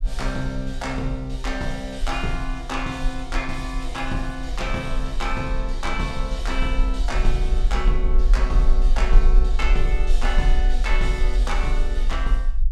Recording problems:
rumble; below 42 Hz, strongest tone 28 Hz, SNR -3 dB

